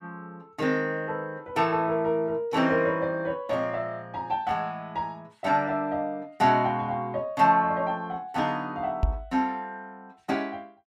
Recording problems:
microphone thump; at 9 s; peak +6 dB vs average level

